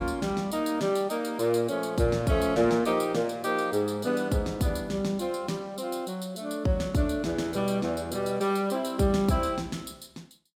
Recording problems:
none

